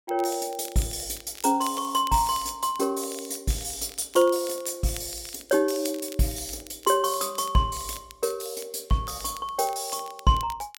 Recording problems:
crackling; vinyl, SNR 19 dB

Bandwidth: 16.5 kHz